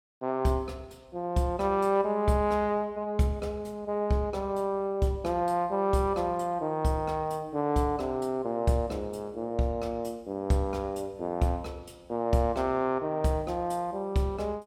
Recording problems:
none

